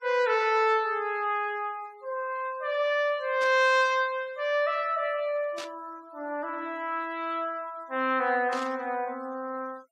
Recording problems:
noise reduction artefacts; signal-to-artefact ratio 27 dB
burst of static; at 3.5 s, at 5.5 s and at 8.5 s; peak -8 dB vs average level

